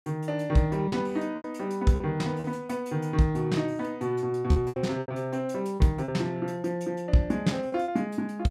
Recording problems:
lost packets; 7% of the sound replaced, filled with repeated pitch periods

